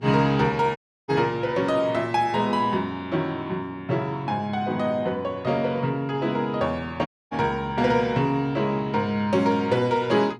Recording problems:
mains hum; 60 Hz, harmonics up to 840 Hz, SNR 22 dB
dropout; at 1 s and at 7 s

